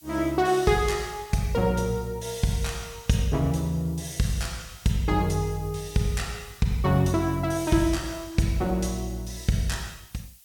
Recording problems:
hiss; SNR 24 dB

